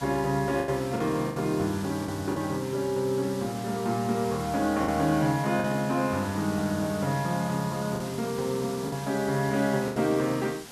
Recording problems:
hiss; slope -2 dB per octave, SNR 14 dB
lost packets; 5% of the sound replaced, filled with the last packet

